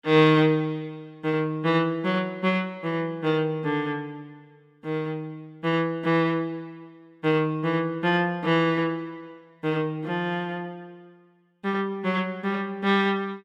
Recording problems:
none

